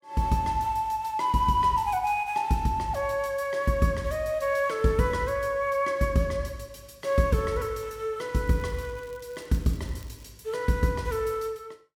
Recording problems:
crackling; from 8.5 to 10 s; loose cable, SNR 29 dB

